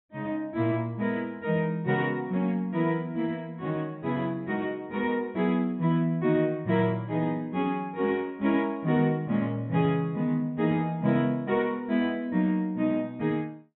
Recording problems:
treble missing; nothing above 3.8 kHz

